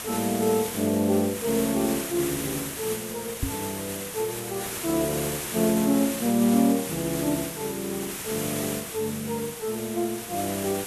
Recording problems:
background hiss; slope -2 dB per octave, SNR 5 dB
microphone bump; at 3.5 s; peak +2 dB vs average level

